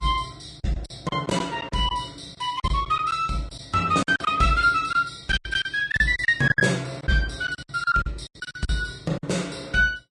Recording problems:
lossy codec; Vorbis, log-spectral distance 3 dB
packet loss; 13% of the sound replaced, filled with silence

